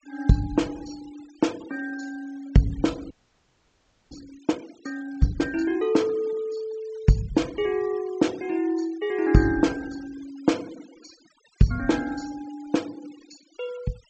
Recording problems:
treble cut off; nothing above 8 kHz
noise reduction artefacts; signal-to-artefact ratio 22 dB
audio freezing; at 3 s for 1 s

